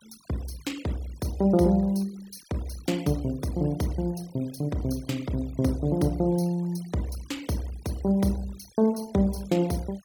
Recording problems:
denoising artefacts; signal-to-artefact ratio 23 dB

